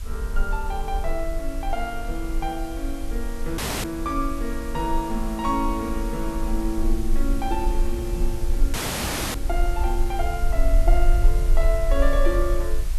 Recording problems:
background hiss; slope -1 dB per octave, SNR 14 dB
low-frequency rumble; below 42 Hz, strongest tone 20 Hz, SNR -1 dB
audio cutting out; at 3.5 s and at 8.5 s for 0.5 s
microphone bump; at 8 s; peak -2 dB vs average level

